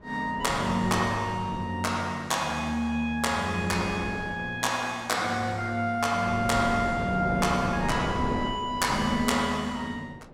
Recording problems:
wind noise; below 580 Hz, SNR 9 dB

